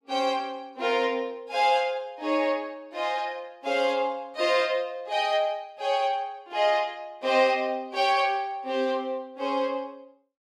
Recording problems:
none

